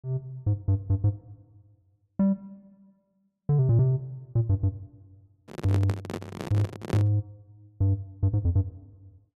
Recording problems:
handling noise; from 5.5 to 7 s; peak 0 dB vs average level

